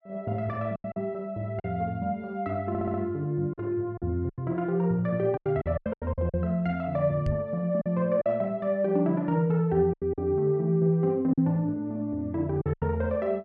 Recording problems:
packet loss; 8% of the sound replaced, filled with silence
stutter; at 2.5 s
microphone thump; at 7.5 s; peak 0 dB vs average level

